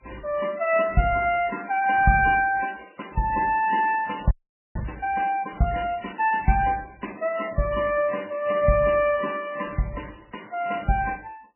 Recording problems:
lossy codec; MP3, then MP3, log-spectral distance 6 dB, nothing above 2.4 kHz
audio freezing; at 4.5 s

